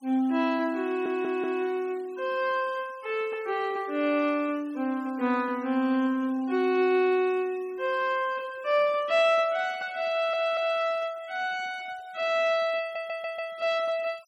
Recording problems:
noise reduction artefacts; signal-to-artefact ratio 26 dB
audio stuttering; at 1 s, at 10 s and at 13 s

